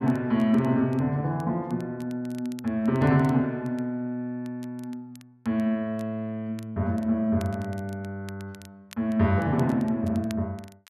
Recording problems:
crackle; vinyl, SNR 26 dB

